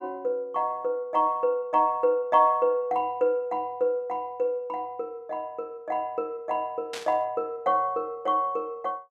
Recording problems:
static burst; at 7 s; peak -5 dB vs average level

